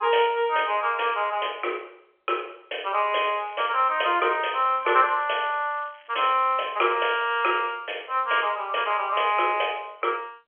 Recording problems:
phone line; 320 Hz to 3.3 kHz, G.711
crackling; from 3.5 to 7.5 s; loose cable, SNR 27 dB

